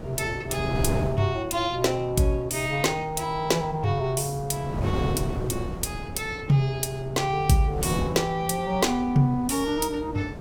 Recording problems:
wind noise; below 350 Hz, SNR 9 dB

